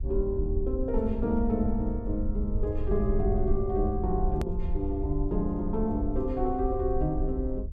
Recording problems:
low-frequency rumble; below 62 Hz, SNR 3 dB
hard cut with a click; at 4.5 s

